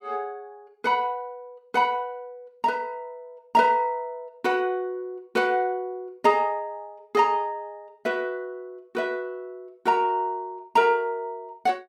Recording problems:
none

